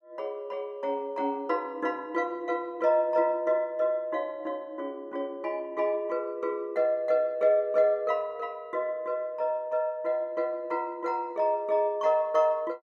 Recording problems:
none

